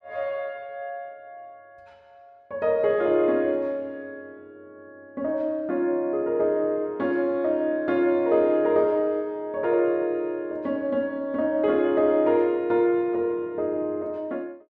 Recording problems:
none

